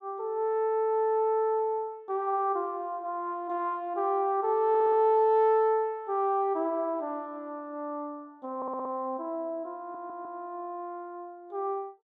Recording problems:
audio stuttering; at 4.5 s, at 8.5 s and at 10 s

